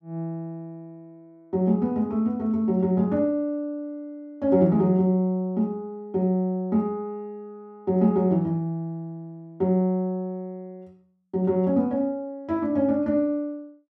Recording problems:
none

